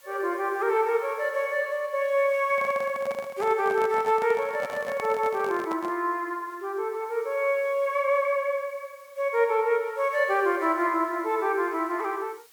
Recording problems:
background hiss; slope +1 dB per octave, SNR 28 dB
handling noise; from 2.5 to 6 s; peak -6 dB vs average level

